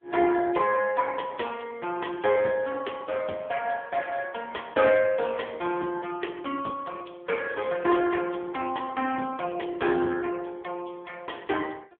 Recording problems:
phone line; 300 Hz to 3.3 kHz, AMR-NB

